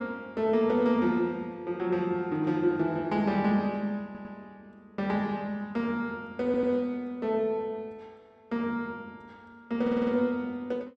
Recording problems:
audio stuttering; at 4 s, at 6.5 s and at 10 s

